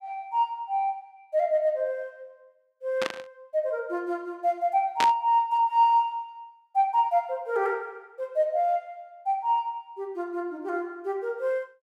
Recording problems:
burst of static; at 3 s and at 5 s; peak +3 dB vs average level

